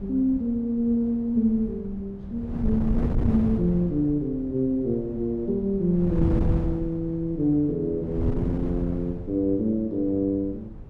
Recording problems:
wind on the microphone; below 170 Hz, SNR 7 dB

